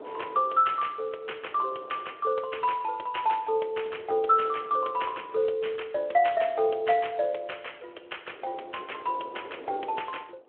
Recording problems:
phone line; 340 Hz to 3.3 kHz, Speex
wind on the microphone; below 640 Hz, SNR 20 dB

